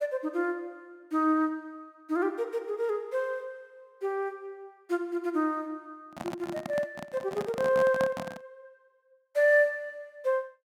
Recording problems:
handling noise; from 6 to 8.5 s; peak -1 dB vs average level

